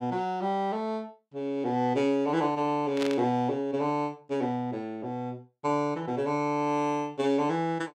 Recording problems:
static burst; at 3 s; peak -3 dB vs average level

